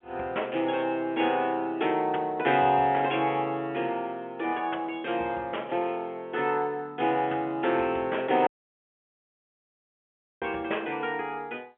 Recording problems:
telephone audio; 280 Hz to 3.5 kHz, G.711
dropout; at 8.5 s for 2 s

